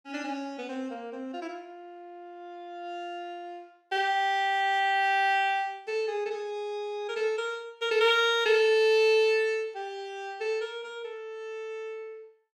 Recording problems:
none

